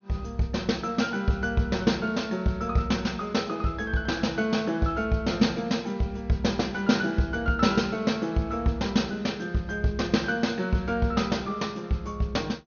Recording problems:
treble missing; nothing above 6.6 kHz

